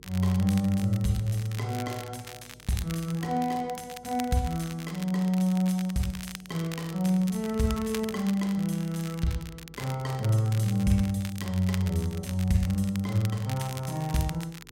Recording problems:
hum; 50 Hz, harmonics up to 450 Hz, SNR 27 dB
crackle; vinyl, SNR 15 dB

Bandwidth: 16 kHz